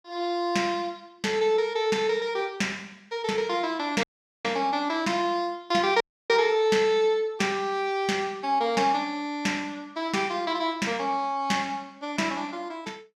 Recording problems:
dropout; at 4 s and at 6 s

